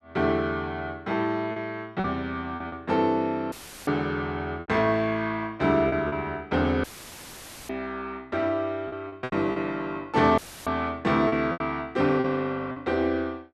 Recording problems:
packet loss; 6% of the sound replaced, filled with repeated pitch periods
audio cutting out; at 3.5 s, at 7 s for 1 s and at 10 s; filled with static

